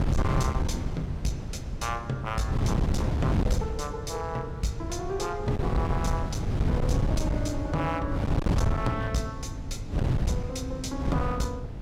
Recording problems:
distorted audio; hard clipping, uneven, signal-to-distortion ratio 10 dB
wind noise; below 190 Hz, SNR -2 dB

